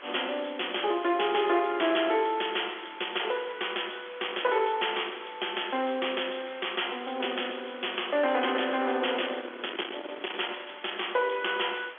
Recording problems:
phone line; 300 Hz to 3.4 kHz, G.711
distorted audio; soft clipping, signal-to-distortion ratio 11 dB
hiss; SNR 17 dB
wind on the microphone; below 2.6 kHz, SNR 17 dB

